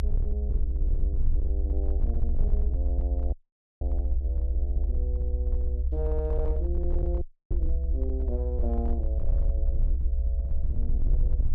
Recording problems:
distorted audio; hard clipping, signal-to-distortion ratio 12 dB
low-frequency rumble; below 64 Hz, SNR -11 dB
audio cutting out; at 3.5 s and at 7 s

